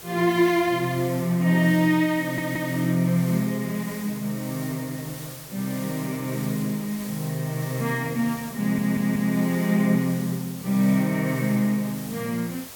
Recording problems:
hiss; slope -2 dB per octave, SNR 15 dB
stutter; at 2 s and at 8.5 s

